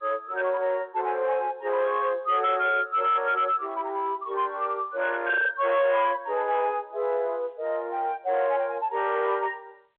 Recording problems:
telephone audio; 370 Hz to 3.7 kHz, G.711
distortion; soft clipping, signal-to-distortion ratio 12 dB

